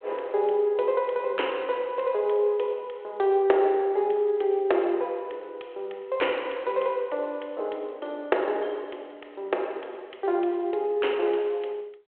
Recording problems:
phone line; 320 Hz to 3.3 kHz, G.726

